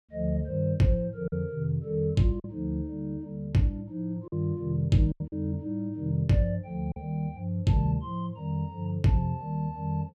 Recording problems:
packet loss; 3% of the sound replaced, filled with silence

